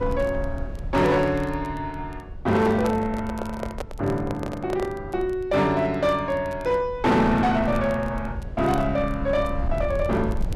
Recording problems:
distorted audio; hard clipping, signal-to-distortion ratio 12 dB
low-frequency rumble; below 100 Hz, SNR 12 dB
crackling; vinyl, SNR 29 dB
microphone handling noise; from 2.5 to 5 s; peak -3 dB vs average level

